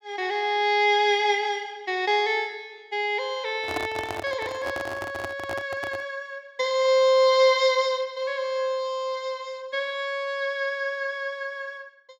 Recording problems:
handling noise; from 3.5 to 6 s; peak -1 dB vs average level

